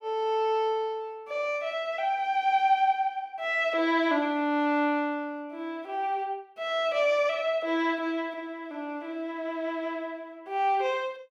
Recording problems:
none

